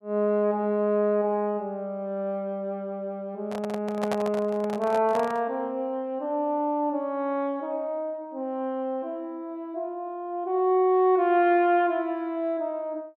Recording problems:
handling noise; from 3.5 to 5.5 s; peak 0 dB vs average level

